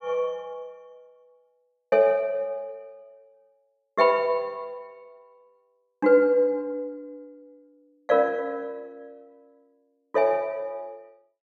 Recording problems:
none

